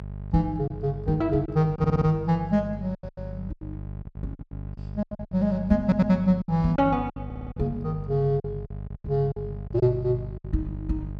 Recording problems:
electrical hum; 50 Hz, harmonics up to 650 Hz, SNR 11 dB
lost packets; 11% of the sound replaced, filled with silence
stutter; at 2 s, at 6 s and at 7.5 s

